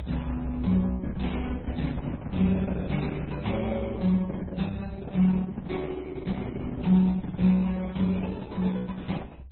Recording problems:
codec artefacts; Opus, then MP3, log-spectral distance 3 dB, nothing above 4 kHz
low-frequency rumble; below 68 Hz, strongest tone 66 Hz, SNR 10 dB

